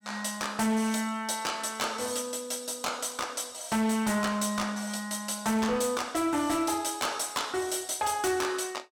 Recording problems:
distortion; hard clipping, signal-to-distortion ratio 11 dB

